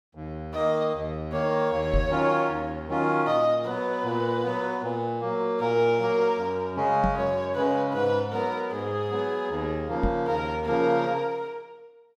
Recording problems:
knock on the microphone; at 2 s, at 7 s and at 10 s; peak +3 dB vs average level

